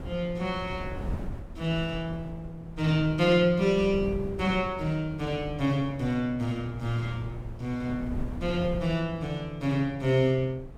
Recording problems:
wind on the microphone; below 180 Hz, SNR 12 dB

